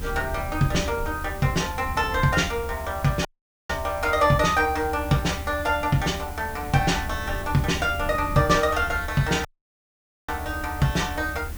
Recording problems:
hiss; slope -2 dB per octave, SNR 18 dB
rumble; below 86 Hz, SNR 11 dB
audio cutting out; at 3.5 s and at 9.5 s for 1 s

